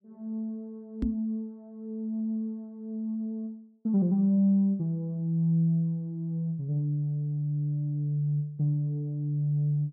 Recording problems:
microphone thump; at 1 s; peak +4 dB vs average level

